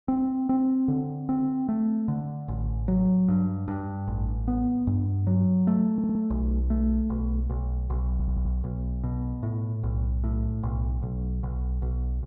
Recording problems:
stutter; at 6 s and at 8 s

